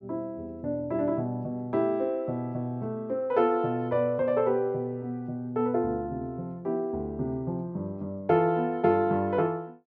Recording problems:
none

